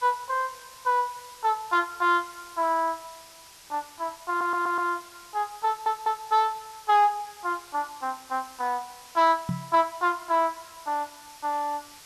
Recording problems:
background hiss; slope +1 dB per octave, SNR 20 dB
stutter; at 4.5 s and at 5.5 s
knock on the microphone; at 9.5 s; peak 0 dB vs average level

